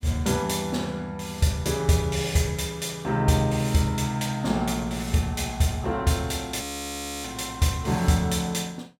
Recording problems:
audio freezing; at 6.5 s for 0.5 s

